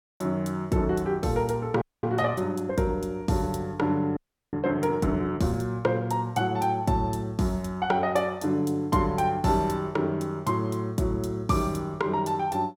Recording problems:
audio freezing; at 2 s and at 4 s

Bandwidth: 18 kHz